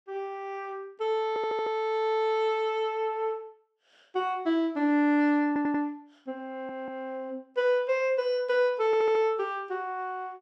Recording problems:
stutter; 4 times, first at 1.5 s

